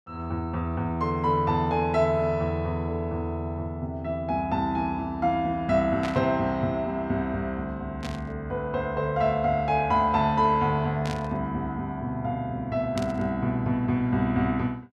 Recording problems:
burst of static; 4 times, first at 6 s; peak -5 dB vs average level

